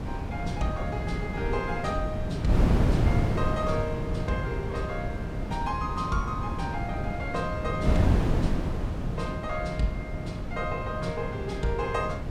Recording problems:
wind noise; below 240 Hz, SNR -3 dB

